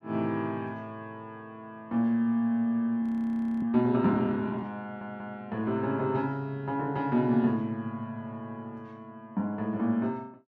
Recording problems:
audio freezing; at 3 s for 0.5 s
audio stuttering; at 5 s

